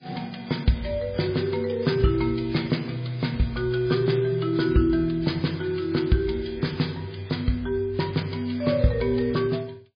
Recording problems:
lossy compression; MP3, log-spectral distance 4 dB, nothing above 11 kHz

